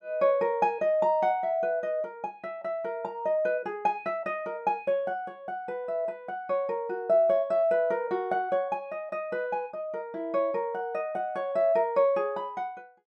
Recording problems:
none

